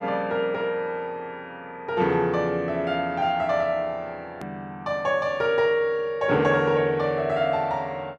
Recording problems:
hard cut with a click; at 4.5 s

